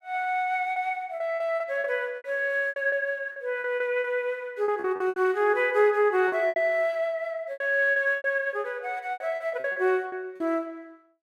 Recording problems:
packet loss; 13% of the sound replaced, filled with repeated pitch periods

